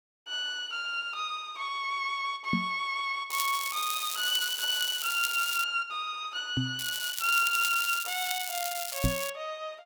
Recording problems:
microphone bump; at 2.5 s, at 6.5 s and at 9 s; peak +5 dB vs average level
crackling; from 3.5 to 5.5 s and from 7 to 9.5 s; loose cable, SNR 4 dB

